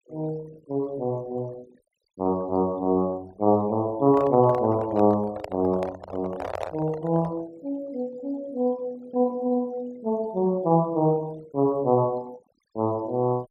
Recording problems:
denoising artefacts; signal-to-artefact ratio 24 dB
microphone handling noise; from 4 to 7.5 s; peak -2 dB vs average level

